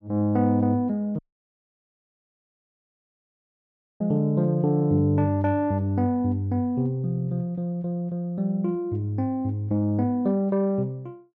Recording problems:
audio cutting out; at 1 s for 3 s

